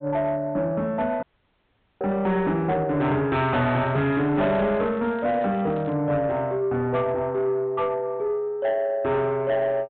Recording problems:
treble missing; nothing above 4 kHz
distorted audio; soft clipping, signal-to-distortion ratio 11 dB
audio cutting out; at 1 s for 1 s
crackling; from 3.5 to 6 s; loose cable, SNR 27 dB

